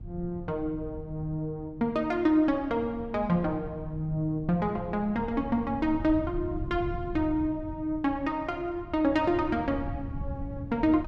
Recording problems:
low-frequency rumble; below 130 Hz, SNR 12 dB

